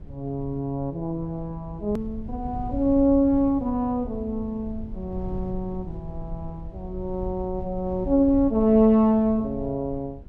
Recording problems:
low-frequency rumble; below 100 Hz, SNR 14 dB
hard cut with a click; at 2 s

